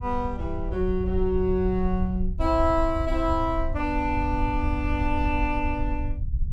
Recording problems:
rumble; below 78 Hz, SNR 4 dB

